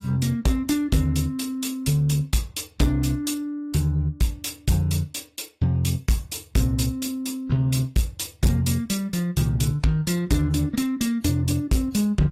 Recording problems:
lossy compression; AAC, log-spectral distance 3 dB, nothing above 14.3 kHz
distorted audio; soft clipping, signal-to-distortion ratio 10 dB

